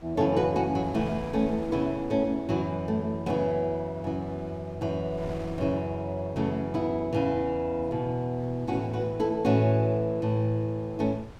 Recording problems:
wind on the microphone; below 470 Hz, SNR 19 dB

